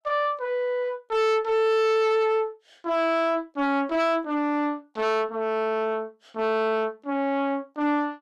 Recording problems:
distortion; soft clipping, signal-to-distortion ratio 7 dB

